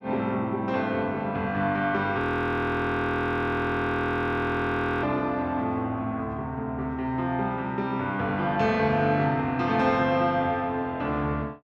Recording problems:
audio freezing; at 2 s for 3 s

